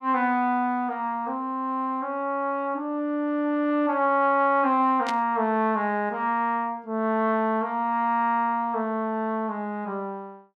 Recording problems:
static burst; at 5 s; peak -5 dB vs average level

